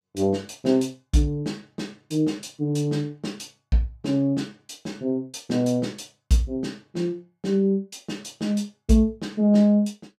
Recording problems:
none

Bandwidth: 15 kHz